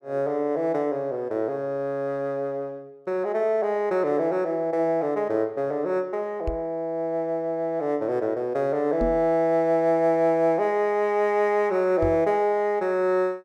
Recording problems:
microphone bump; at 6.5 s, at 9 s and at 12 s; peak -2 dB vs average level

